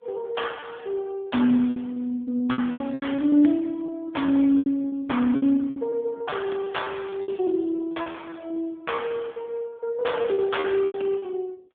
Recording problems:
phone line; 150 Hz to 3.6 kHz, AMR-NB
packet loss; 13% of the sound replaced, filled with repeated pitch periods

